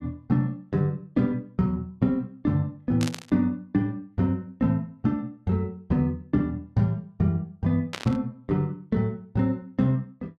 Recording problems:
static burst; at 3 s and at 8 s; peak -2 dB vs average level

